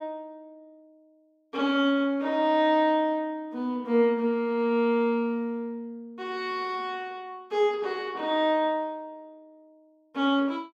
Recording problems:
none

